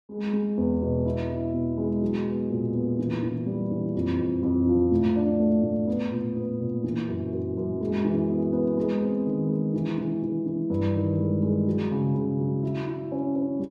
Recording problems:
none

